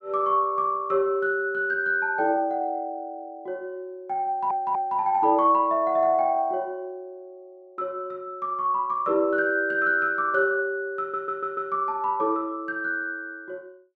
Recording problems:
stutter; at 4.5 s and at 11 s

